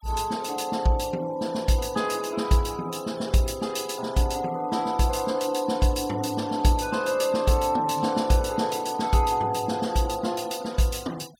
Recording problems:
noise reduction artefacts; signal-to-artefact ratio 21 dB

